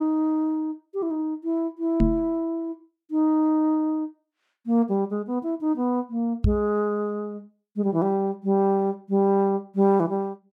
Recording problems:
microphone thump; at 2 s and at 6.5 s; peak +6 dB vs average level

